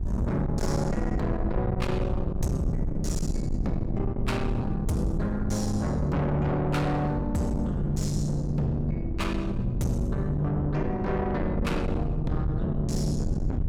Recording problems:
distorted audio; soft clipping, signal-to-distortion ratio 7 dB
electrical hum; 50 Hz, harmonics up to 850 Hz, SNR 13 dB
low-frequency rumble; below 120 Hz, SNR 6 dB
wind noise; below 180 Hz, SNR 9 dB

